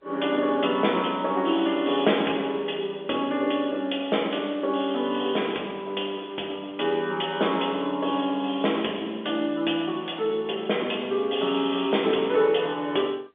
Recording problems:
telephone audio; 240 Hz to 3.5 kHz, G.711

